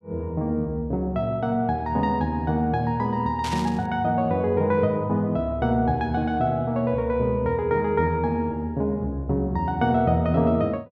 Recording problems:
static burst; at 3.5 s; peak -6 dB vs average level

